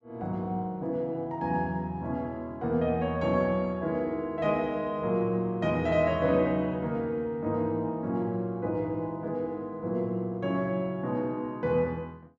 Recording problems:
none

